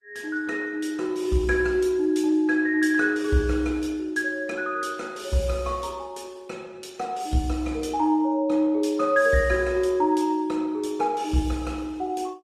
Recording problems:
lossy codec; Opus, log-spectral distance 2 dB, nothing above 14.7 kHz

